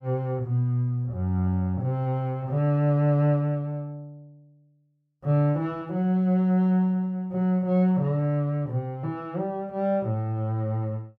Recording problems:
none

